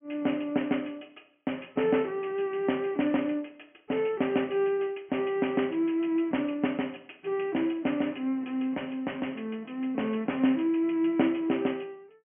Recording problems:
low-pass filter; nothing above 3 kHz

